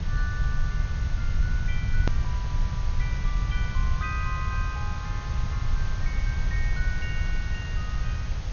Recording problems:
treble cut off; nothing above 6.7 kHz
background hiss; slope -3 dB per octave, SNR 4 dB
rumble; below 82 Hz, SNR -9 dB
edit click; at 2 s

